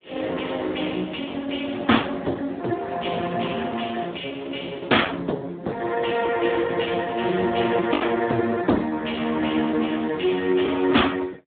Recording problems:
phone line; 190 Hz to 3.6 kHz, Speex
distorted audio; hard clipping, signal-to-distortion ratio 13 dB
lost packets; 1.6% of the sound replaced, filled with the last packet

